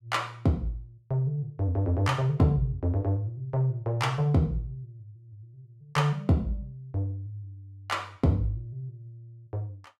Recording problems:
none

